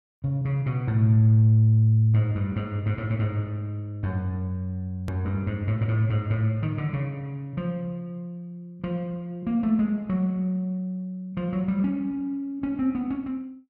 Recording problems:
edit click; at 5 s

